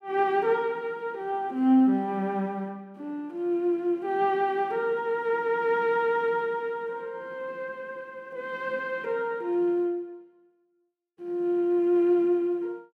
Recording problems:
none

